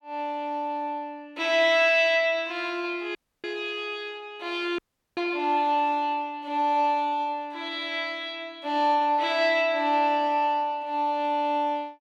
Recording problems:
dropout; at 3 s and at 5 s

